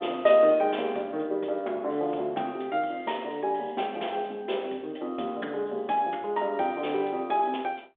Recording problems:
phone line; 240 Hz to 3.6 kHz, G.726

